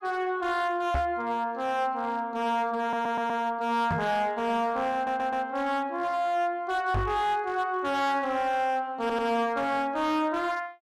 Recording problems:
distortion; hard clipping, signal-to-distortion ratio 10 dB
microphone bump; at 1 s, at 4 s and at 7 s; peak +1 dB vs average level
stutter; at 3 s, at 5 s and at 9 s

